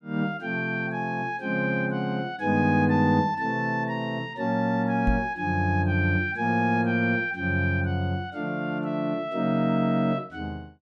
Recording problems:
microphone bump; at 5 s; peak +3 dB vs average level

